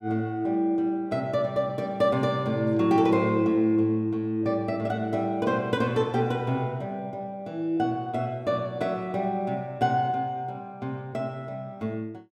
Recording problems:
none

